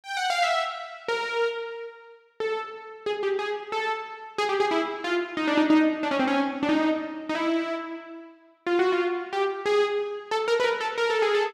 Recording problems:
none

